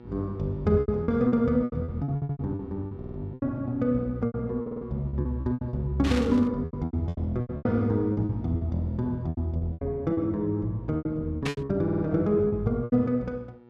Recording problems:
electrical hum; 60 Hz, harmonics up to 1.8 kHz, SNR 22 dB
lost packets; 16% of the sound replaced, filled with repeated pitch periods
audio stuttering; 4 times, first at 2 s
static burst; at 6 s and at 11 s; peak 0 dB vs average level

